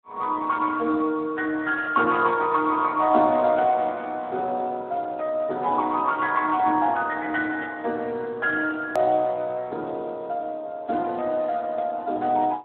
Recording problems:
phone line; 260 Hz to 3 kHz, Speex
click at an edit; at 9 s

